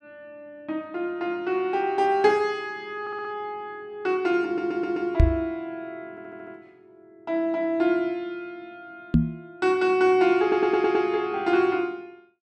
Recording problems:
stutter; 4 times, first at 3 s
microphone bump; at 5 s and at 9 s; peak +9 dB vs average level

